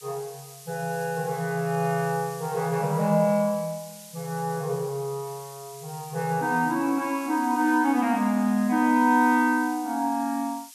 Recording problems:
hiss; slope +6 dB per octave, SNR 19 dB

